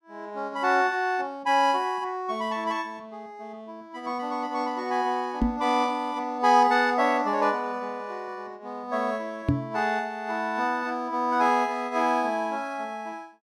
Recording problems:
knock on the microphone; at 5.5 s and at 9.5 s; peak +6 dB vs average level

